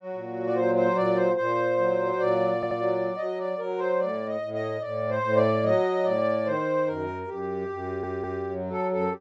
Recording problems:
stutter; at 2.5 s and at 8 s

